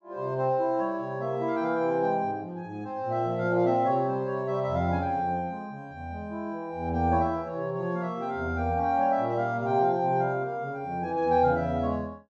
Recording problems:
treble cut off; nothing above 8 kHz

